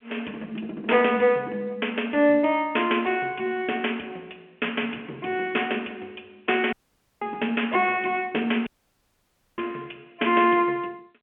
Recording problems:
phone line; 300 Hz to 3.4 kHz, G.711
dropout; at 6.5 s and at 8.5 s for 1 s

